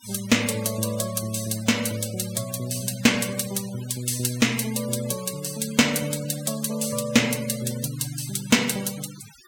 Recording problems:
denoising artefacts; signal-to-artefact ratio 14 dB

